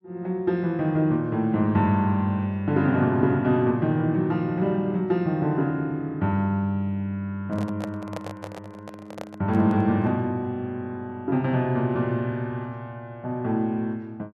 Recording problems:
handling noise; from 7.5 to 10 s; peak -6 dB vs average level

